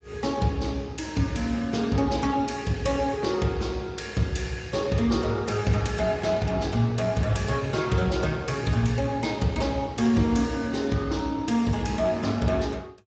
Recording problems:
lossy compression; Speex, log-spectral distance 4 dB, nothing above 7.6 kHz

